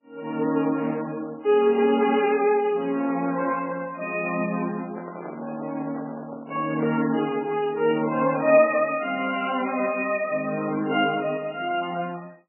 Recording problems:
lossy compression; Vorbis, then MP3, log-spectral distance 4 dB, nothing above 2.5 kHz
handling noise; from 5 to 7 s; peak -8 dB vs average level

